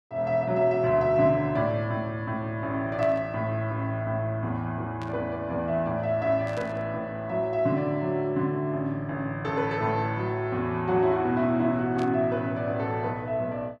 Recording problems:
burst of static; 4 times, first at 3 s; peak -12 dB vs average level

